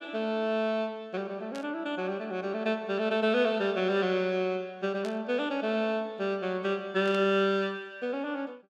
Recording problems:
static burst; at 1.5 s, at 5 s and at 7 s; peak -10 dB vs average level

